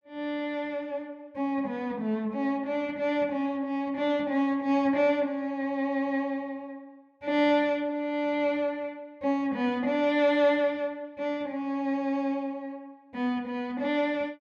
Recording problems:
none

